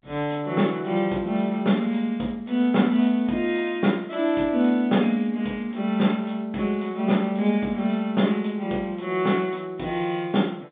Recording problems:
phone line; 150 Hz to 3.7 kHz, G.711

